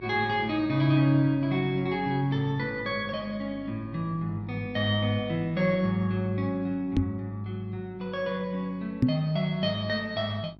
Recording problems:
hum; 50 Hz, harmonics up to 1.1 kHz, SNR 19 dB
knock on the microphone; at 7 s and at 9 s; peak +9 dB vs average level

